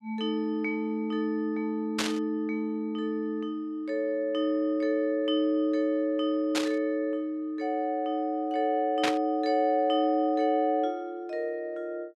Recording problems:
burst of static; at 2 s, at 6.5 s and at 9 s; peak +4 dB vs average level

